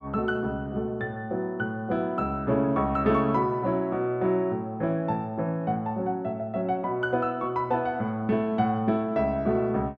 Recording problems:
none

